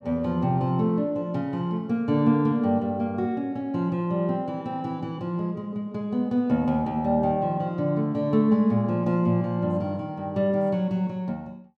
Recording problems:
none

